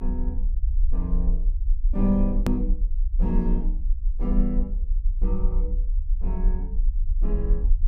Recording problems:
low-frequency rumble; below 40 Hz, strongest tone 28 Hz, SNR -3 dB
hard cut with a click; at 2.5 s

